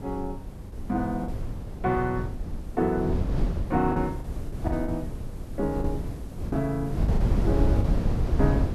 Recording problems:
hiss; slope -2 dB per octave, SNR 28 dB
wind on the microphone; below 150 Hz, SNR 1 dB
packet loss; 6% of the sound replaced, filled with the last packet

